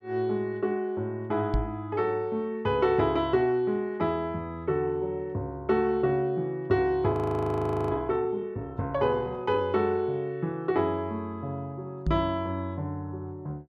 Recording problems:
microphone bump; at 1.5 s and at 12 s; peak +4 dB vs average level
audio freezing; at 7 s for 1 s

